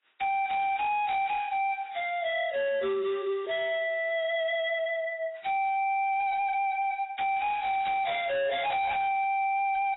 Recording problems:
codec artefacts; AAC, log-spectral distance 4 dB, nothing above 3.8 kHz
distorted audio; hard clipping, signal-to-distortion ratio 7 dB

